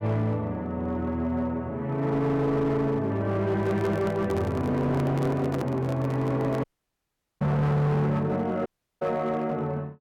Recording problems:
distorted audio; hard clipping, signal-to-distortion ratio 11 dB
microphone handling noise; from 3.5 to 6.5 s; peak -3 dB vs average level
dropout; at 6.5 s for 1 s and at 8.5 s

